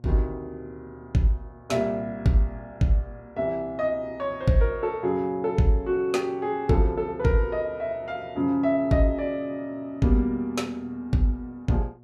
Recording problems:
electrical hum; 60 Hz, harmonics up to 720 Hz, SNR 26 dB

